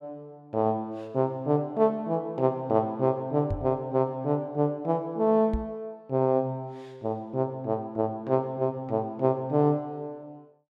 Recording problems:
knock on the microphone; at 3.5 s and at 5.5 s; peak 0 dB vs average level

